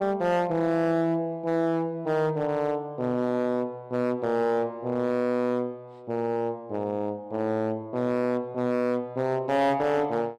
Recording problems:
distorted audio; hard clipping, uneven, signal-to-distortion ratio 10 dB

